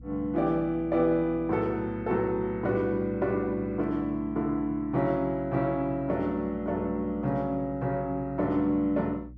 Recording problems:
hum; 60 Hz, harmonics up to 300 Hz, SNR 18 dB

